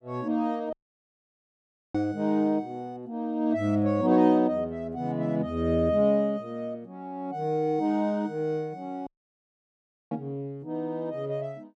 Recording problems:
audio cutting out; at 0.5 s for 1 s and at 9 s for 1 s

